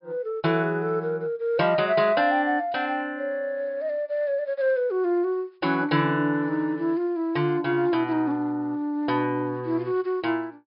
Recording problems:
treble cut off; nothing above 5.5 kHz

